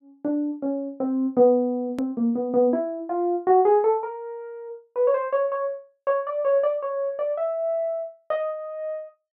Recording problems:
hard cut with a click; at 2 s

